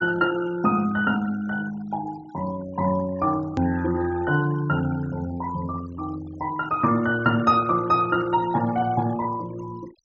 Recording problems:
low-pass filter; nothing above 7.5 kHz
noise reduction artefacts; signal-to-artefact ratio 20 dB
edit click; at 3.5 s

